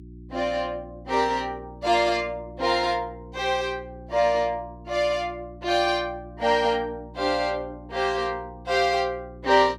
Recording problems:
hum; 60 Hz, harmonics up to 360 Hz, SNR 19 dB

